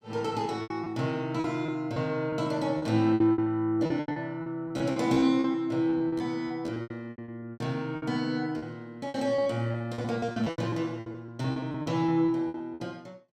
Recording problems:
packet loss; 16% of the sound replaced, filled with repeated pitch periods

